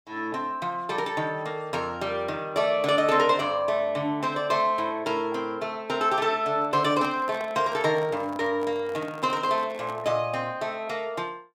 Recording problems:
microphone handling noise; from 6.5 to 10 s; peak -7 dB vs average level

